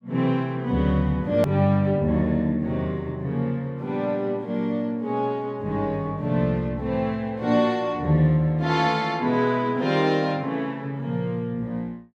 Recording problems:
edit click; at 1.5 s

